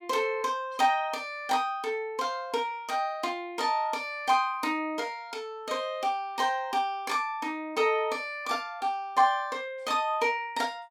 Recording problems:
none

